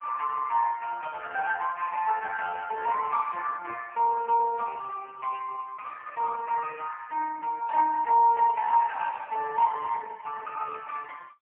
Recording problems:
telephone audio; 370 Hz to 3.1 kHz, AMR-NB, then MP3

